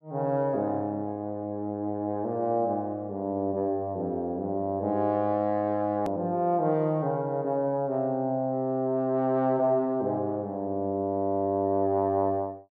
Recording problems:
click at an edit; at 6 s

